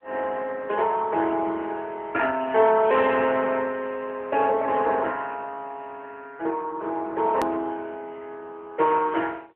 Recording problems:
telephone audio; 300 Hz to 3.2 kHz, AMR-NB
edit click; at 7.5 s

